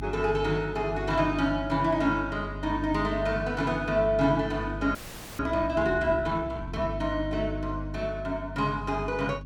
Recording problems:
hum; 50 Hz, harmonics up to 300 Hz, SNR 10 dB
frozen audio; at 5 s

